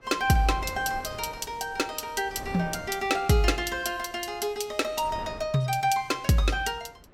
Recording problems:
wind on the microphone; below 610 Hz, SNR 18 dB

